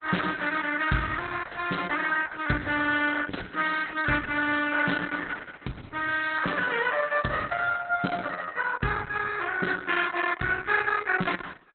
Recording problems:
lossy compression; Opus, log-spectral distance 6 dB, nothing above 4 kHz

